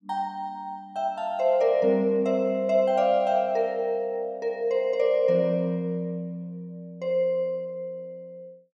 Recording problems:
none

